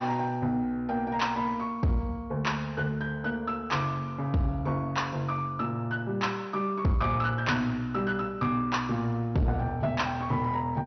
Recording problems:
lossy codec; MP2, log-spectral distance 2 dB, nothing above 6 kHz
distortion; soft clipping, signal-to-distortion ratio 11 dB

